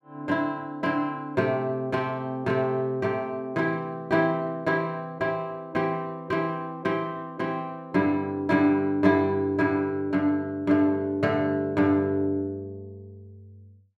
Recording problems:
none

